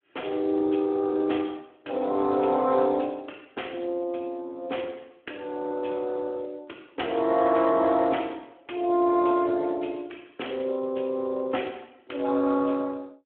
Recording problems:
phone line; 260 Hz to 3.3 kHz, Speex

